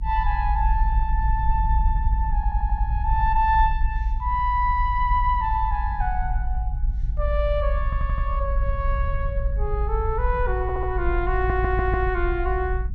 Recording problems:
rumble; below 56 Hz, SNR 0 dB
stutter; 4 times, first at 2.5 s

